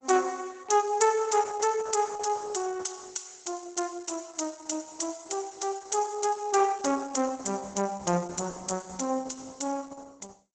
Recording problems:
lossy codec; Opus, log-spectral distance 9 dB, nothing above 8 kHz

